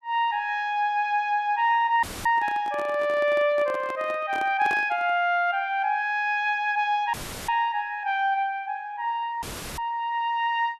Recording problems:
audio cutting out; at 2 s, at 7 s and at 9.5 s; filled with static
microphone handling noise; from 2.5 to 5 s; peak -7 dB vs average level

